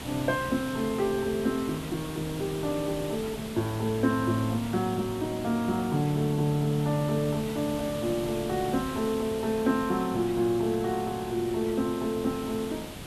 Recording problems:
background hiss; SNR 11 dB

